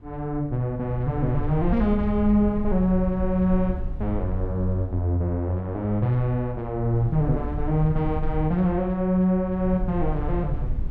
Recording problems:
low-frequency rumble; below 76 Hz, SNR 8 dB

